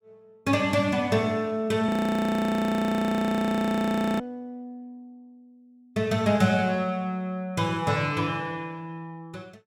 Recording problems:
audio freezing; at 2 s for 2.5 s

